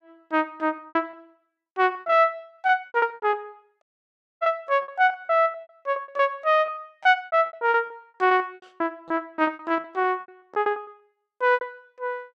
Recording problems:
packet loss; 23% of the sound replaced, filled with repeated pitch periods
dropout; at 4 s for 0.5 s

